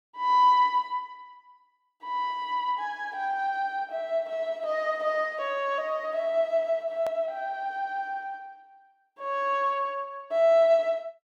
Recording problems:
hard cut with a click; at 7 s

